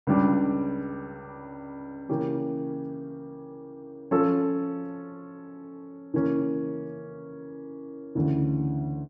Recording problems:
none

